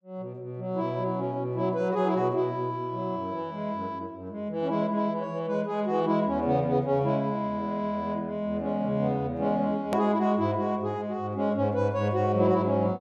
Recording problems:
click at an edit; at 10 s

